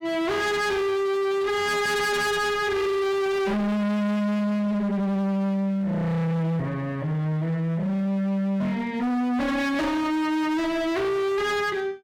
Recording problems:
distorted audio; hard clipping, signal-to-distortion ratio 6 dB

